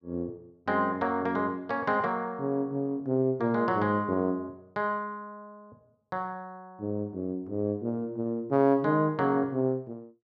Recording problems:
none

